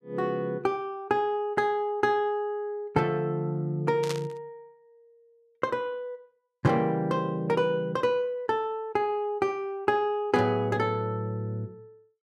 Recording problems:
static burst; at 4 s; peak -2 dB vs average level

